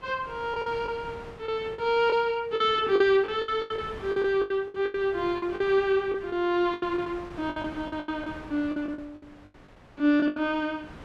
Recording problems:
wind on the microphone; below 1.2 kHz, SNR 20 dB
lost packets; 14% of the sound replaced, filled with the last packet

